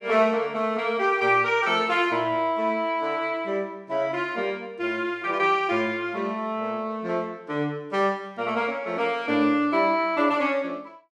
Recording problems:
none

